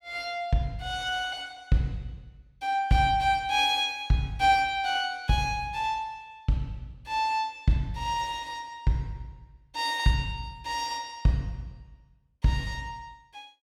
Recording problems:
none

